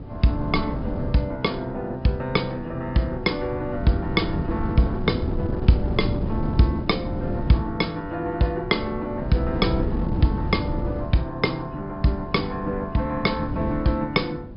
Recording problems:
low-pass filter; nothing above 5.5 kHz
wind noise; below 230 Hz, SNR 6 dB

